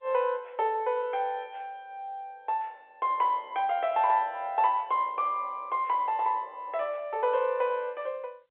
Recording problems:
phone line; 370 Hz to 3.6 kHz, G.711

